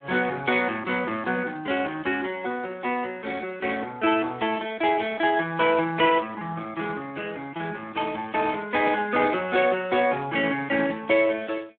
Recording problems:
phone line; 220 Hz to 4 kHz, Speex

